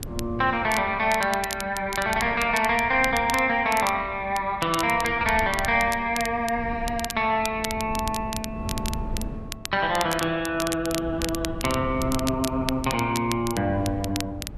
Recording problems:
wind noise; below 200 Hz, SNR 14 dB
crackling; vinyl, SNR 11 dB

